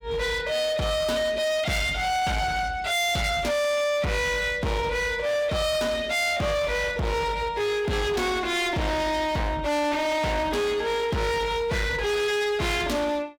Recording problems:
distortion; hard clipping, signal-to-distortion ratio 6 dB

